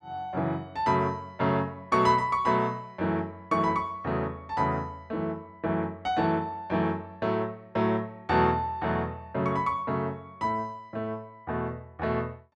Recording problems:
none

